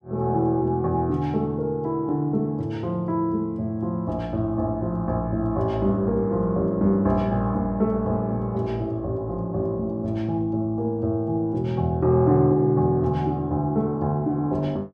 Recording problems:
none

